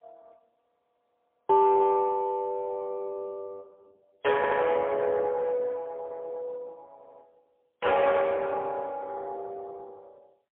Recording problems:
phone line; 340 Hz to 3.3 kHz, AMR-NB, then MP3
frozen audio; at 0.5 s for 1 s
audio stuttering; at 4.5 s and at 7 s

